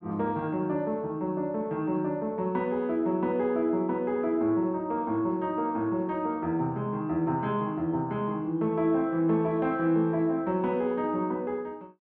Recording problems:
none

